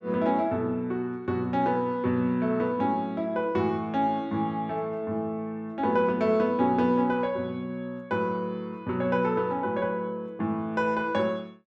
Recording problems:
none

